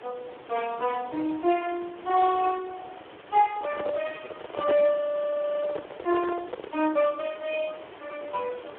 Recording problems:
phone line; 260 Hz to 2.9 kHz, Speex
background hiss; SNR 18 dB
microphone handling noise; from 3.5 to 7 s; peak +1 dB vs average level
audio freezing; at 5 s for 0.5 s

